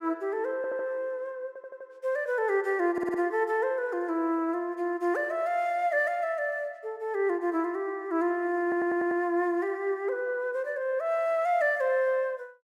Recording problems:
audio stuttering; 4 times, first at 0.5 s

